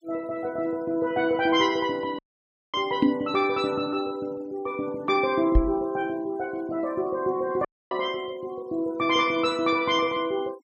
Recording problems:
denoising artefacts; signal-to-artefact ratio 27 dB
dropout; at 2 s for 0.5 s and at 7.5 s
microphone bump; at 3 s and at 5.5 s; peak +8 dB vs average level

